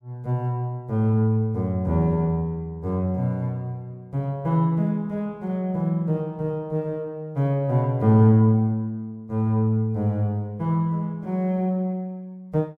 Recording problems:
none

